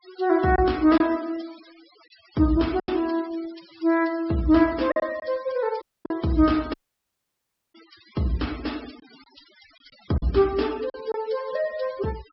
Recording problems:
low-pass filter; nothing above 5.5 kHz
noise reduction artefacts; signal-to-artefact ratio 21 dB
lost packets; 3% of the sound replaced, filled with silence
audio cutting out; at 6 s and at 6.5 s for 1 s

